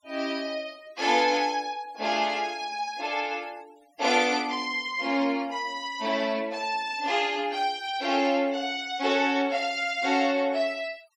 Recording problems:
denoising artefacts; signal-to-artefact ratio 24 dB

